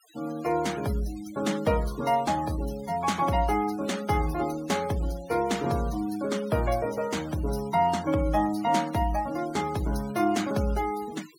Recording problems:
denoising artefacts; signal-to-artefact ratio 17 dB

